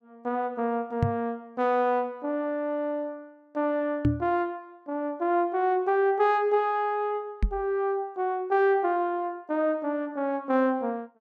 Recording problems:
microphone thump; at 1 s, at 4 s and at 7.5 s; peak +7 dB vs average level

